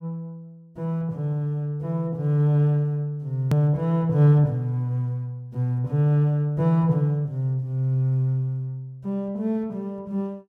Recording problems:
hard cut with a click; at 3.5 s

